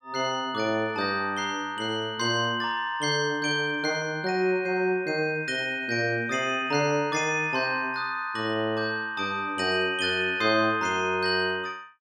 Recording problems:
none

